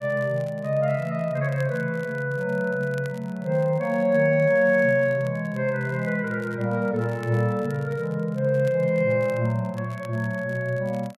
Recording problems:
crackling; vinyl, SNR 28 dB

